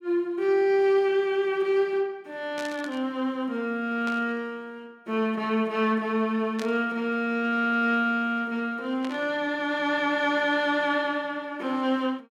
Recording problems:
static burst; 4 times, first at 2.5 s; peak -9 dB vs average level

